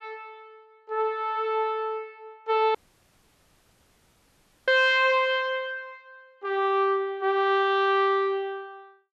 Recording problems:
dropout; at 3 s for 2 s

